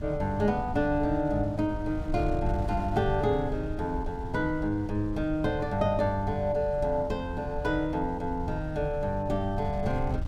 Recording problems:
wind noise; below 98 Hz, SNR 9 dB

